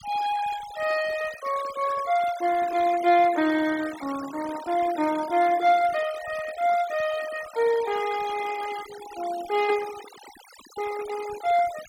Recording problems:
denoising artefacts; signal-to-artefact ratio 16 dB

